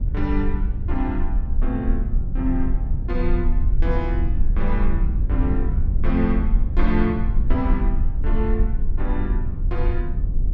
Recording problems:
low-frequency rumble; below 58 Hz, SNR -4 dB

